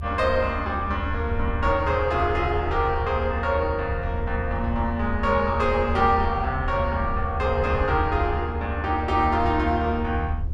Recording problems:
rumble; below 80 Hz, strongest tone 78 Hz, SNR 5 dB

